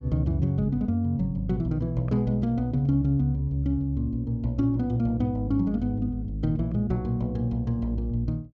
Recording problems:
none

